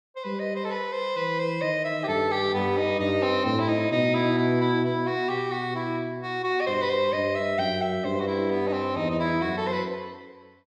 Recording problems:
none

